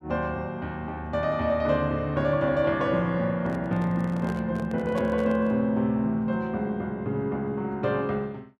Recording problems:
handling noise; from 3.5 to 5.5 s; peak -4 dB vs average level

